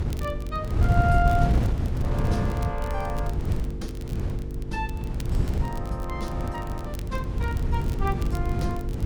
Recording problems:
hum; 50 Hz, harmonics up to 500 Hz, SNR 7 dB
rumble; below 62 Hz, SNR 5 dB
wind noise; below 150 Hz, SNR -4 dB
crackle; vinyl, SNR 18 dB

